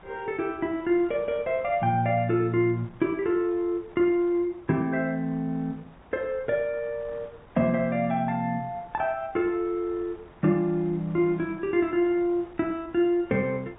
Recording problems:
treble missing; nothing above 4 kHz
wind noise; below 1.1 kHz, SNR 24 dB

